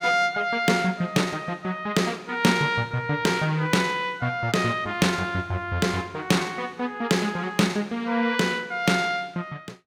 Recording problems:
none

